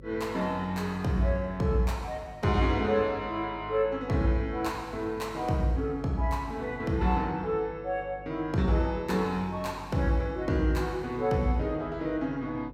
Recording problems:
hum; 50 Hz, harmonics up to 550 Hz, SNR 18 dB

